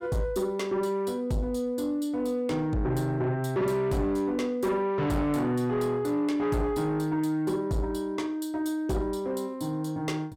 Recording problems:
distorted audio; soft clipping, signal-to-distortion ratio 10 dB

